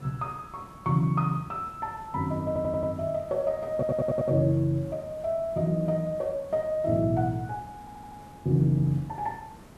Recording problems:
hiss; slope -6 dB per octave, SNR 21 dB
audio stuttering; at 2.5 s, at 3.5 s and at 8 s

